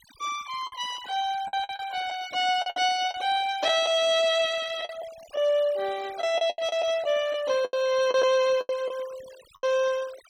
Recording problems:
denoising artefacts; signal-to-artefact ratio 20 dB
packet loss; 9% of the sound replaced, filled with the last packet

